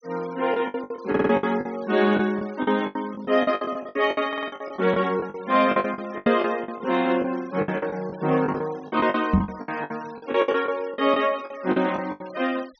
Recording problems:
treble missing; nothing above 6 kHz
noise reduction artefacts; signal-to-artefact ratio 22 dB
packet loss; 17% of the sound replaced, filled with the last packet
stutter; at 1 s and at 4.5 s
microphone thump; at 9.5 s; peak +8 dB vs average level

